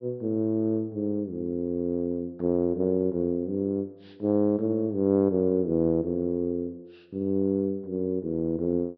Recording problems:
treble missing; nothing above 5.5 kHz

